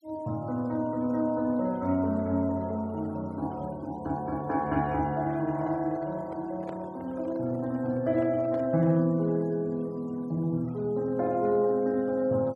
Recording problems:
denoising artefacts; signal-to-artefact ratio 27 dB
handling noise; from 5 to 9 s; peak -9 dB vs average level

